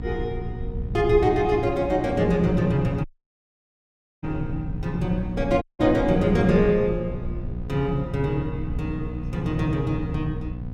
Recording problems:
hum; 60 Hz, harmonics up to 780 Hz, SNR 11 dB
rumble; below 110 Hz, SNR 11 dB
audio cutting out; at 3 s for 1 s and at 5.5 s

